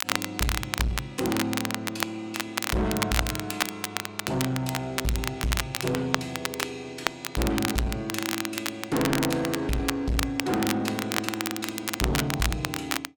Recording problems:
distortion; soft clipping, signal-to-distortion ratio 6 dB
crackling; vinyl, SNR 1 dB

